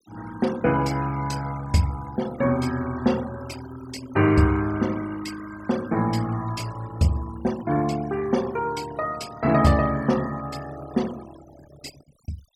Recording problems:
denoising artefacts; signal-to-artefact ratio 18 dB

